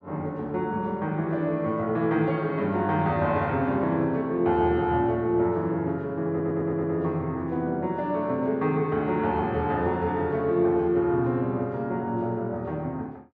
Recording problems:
stutter; at 6.5 s

